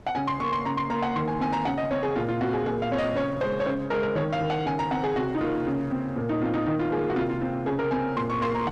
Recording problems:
distorted audio; soft clipping, signal-to-distortion ratio 12 dB
wind noise; below 620 Hz, SNR 19 dB

